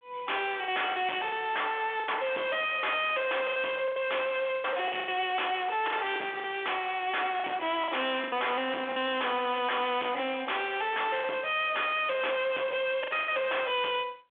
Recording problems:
phone line; 220 Hz to 3.6 kHz, G.726
distorted audio; hard clipping, uneven, signal-to-distortion ratio 5 dB
lost packets; 7% of the sound replaced, filled with the last packet

